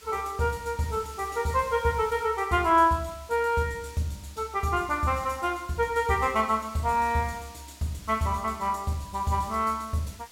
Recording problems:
hiss; slope +1 dB per octave, SNR 21 dB

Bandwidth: 16.5 kHz